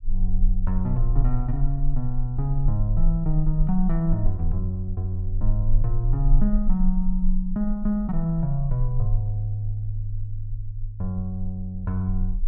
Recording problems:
rumble; below 32 Hz, strongest tone 24 Hz, SNR 3 dB

